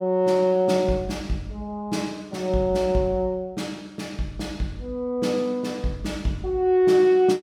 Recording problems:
none

